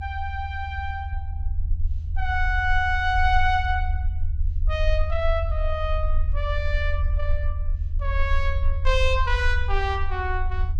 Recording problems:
rumble; below 78 Hz, strongest tone 20 Hz, SNR 1 dB

